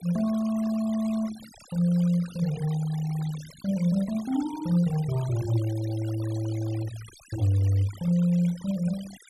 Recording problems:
denoising artefacts; signal-to-artefact ratio 19 dB

